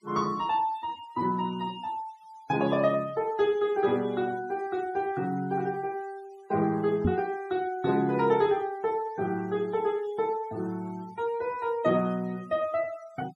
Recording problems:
denoising artefacts; signal-to-artefact ratio 23 dB
microphone bump; at 7 s; peak +6 dB vs average level

